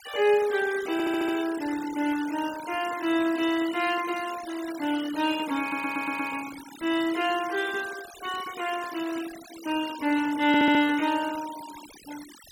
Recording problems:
denoising artefacts; signal-to-artefact ratio 15 dB
stutter; at 1 s, at 5.5 s and at 10 s

